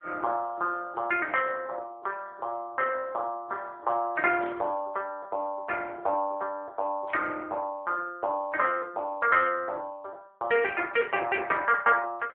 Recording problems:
phone line; 300 Hz to 3.4 kHz, AMR-NB
static burst; at 4.5 s, at 7 s and at 9.5 s; peak -13 dB vs average level

